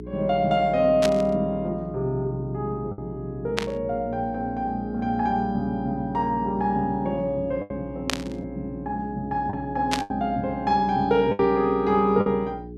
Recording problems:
hum; 60 Hz, harmonics up to 420 Hz, SNR 13 dB
packet loss; 3% of the sound replaced, filled with the last packet
static burst; 4 times, first at 1 s; peak +3 dB vs average level

